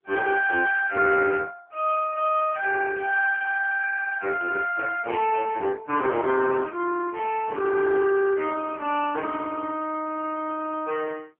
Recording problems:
telephone audio; 300 Hz to 2.1 kHz, AMR-NB

